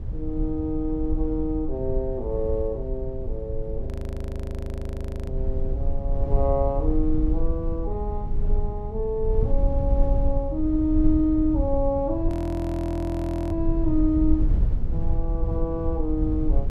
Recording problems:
low-frequency rumble; below 70 Hz, SNR 1 dB
frozen audio; at 4 s for 1.5 s and at 12 s for 1 s

